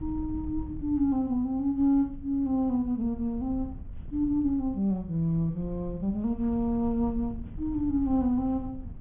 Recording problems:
treble missing; nothing above 3.5 kHz
wind on the microphone; below 100 Hz, SNR 14 dB

